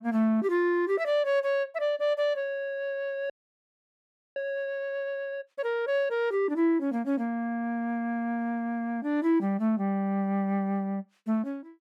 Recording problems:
audio freezing; at 3.5 s for 1 s

